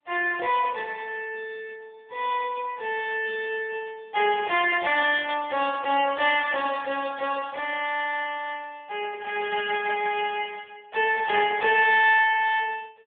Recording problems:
phone line; 320 Hz to 3.4 kHz, AMR-NB

